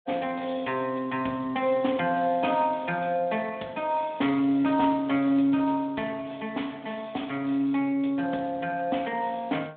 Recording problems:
telephone audio; 150 Hz to 3.5 kHz, Speex

